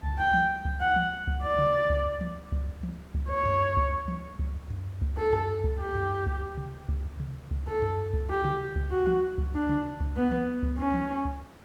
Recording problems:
hiss; slope -6 dB per octave, SNR 24 dB

